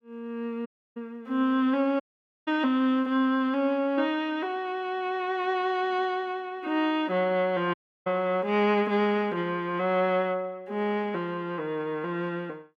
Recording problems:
audio cutting out; at 0.5 s, at 2 s and at 7.5 s

